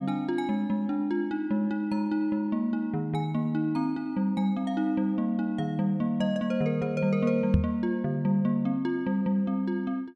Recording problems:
microphone bump; at 7.5 s; peak +8 dB vs average level

